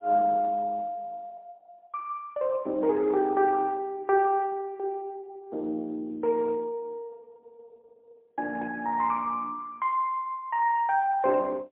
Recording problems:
phone line; 280 Hz to 3.1 kHz, AMR-NB, then MP3

